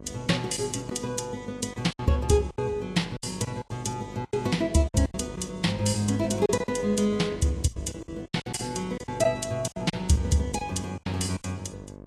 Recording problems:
codec artefacts; Vorbis, log-spectral distance 3 dB, nothing above 11.6 kHz
hum; 50 Hz, harmonics up to 1.2 kHz, SNR 15 dB
lost packets; 11% of the sound replaced, filled with silence

